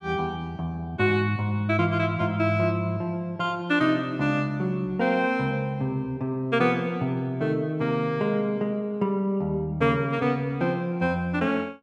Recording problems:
none

